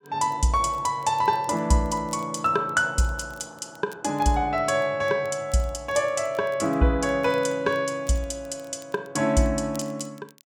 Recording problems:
crackling; vinyl, SNR 28 dB

